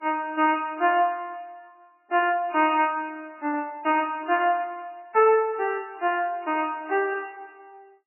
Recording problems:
lossy compression; MP3, log-spectral distance 3 dB, nothing above 2.5 kHz

